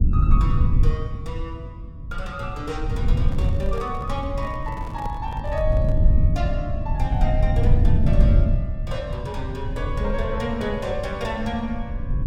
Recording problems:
low-frequency rumble; below 96 Hz, SNR -6 dB
microphone handling noise; from 3 to 6 s; peak -4 dB vs average level

